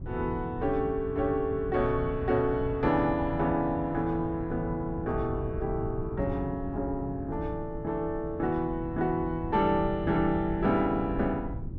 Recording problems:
wind noise; below 160 Hz, SNR 9 dB

